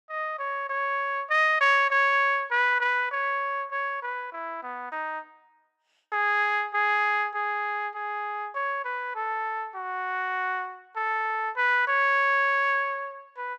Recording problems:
none

